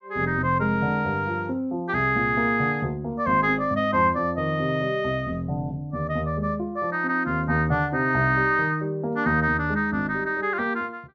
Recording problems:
low-pass filter; nothing above 6.9 kHz

